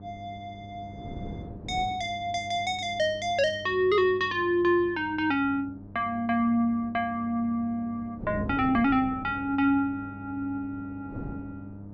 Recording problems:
hum; 50 Hz, harmonics up to 900 Hz, SNR 18 dB
wind on the microphone; below 330 Hz, SNR 17 dB

